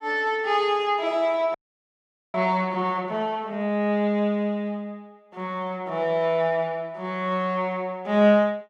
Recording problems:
audio freezing; at 1.5 s for 1 s

